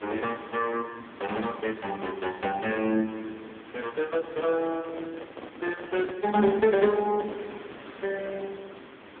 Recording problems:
phone line; 190 Hz to 3.4 kHz, AMR-NB
hiss; SNR 18 dB
handling noise; from 4 to 7.5 s; peak -4 dB vs average level

